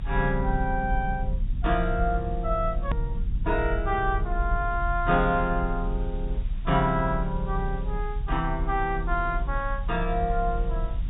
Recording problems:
low-pass filter; nothing above 4 kHz
hiss; SNR 27 dB
rumble; below 52 Hz, strongest tone 34 Hz, SNR 3 dB
click at an edit; at 3 s

